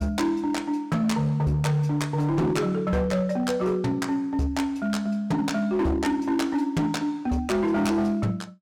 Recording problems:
distorted audio; hard clipping, signal-to-distortion ratio 11 dB

